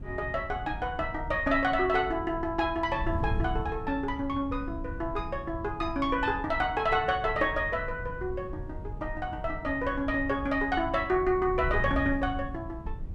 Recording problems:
wind on the microphone; below 110 Hz, SNR 10 dB

